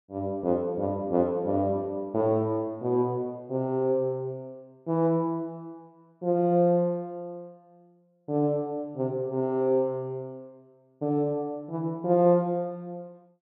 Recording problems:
none

